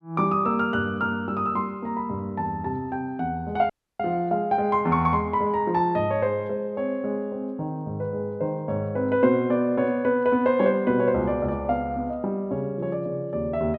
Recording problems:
dropout; at 3.5 s

